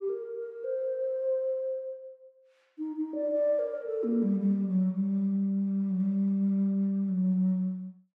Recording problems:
none

